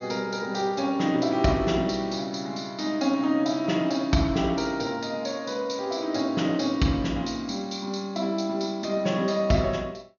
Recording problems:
treble cut off; nothing above 6.9 kHz

